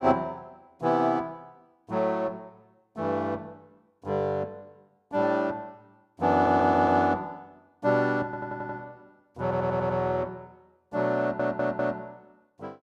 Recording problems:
audio stuttering; 4 times, first at 6.5 s

